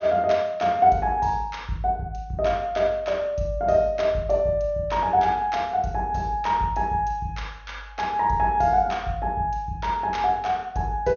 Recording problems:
low-pass filter; nothing above 6.5 kHz

